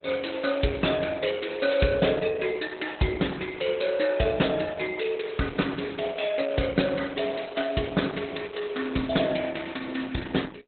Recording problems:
lossy compression; Opus, log-spectral distance 7 dB, nothing above 4 kHz

